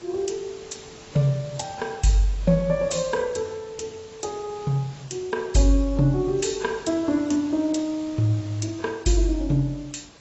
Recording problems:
lossy compression; AAC, log-spectral distance 6 dB, nothing above 7.8 kHz
background hiss; slope -3 dB per octave, SNR 21 dB

